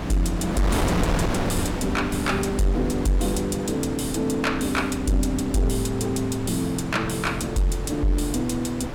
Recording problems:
distorted audio; soft clipping, signal-to-distortion ratio 11 dB
wind on the microphone; below 820 Hz, SNR 5 dB

